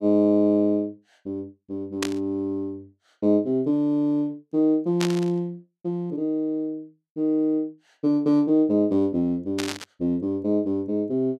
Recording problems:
burst of static; at 2 s, at 5 s and at 9.5 s; peak 0 dB vs average level

